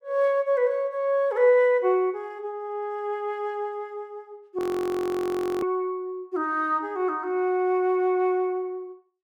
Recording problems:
audio freezing; at 4.5 s for 1 s

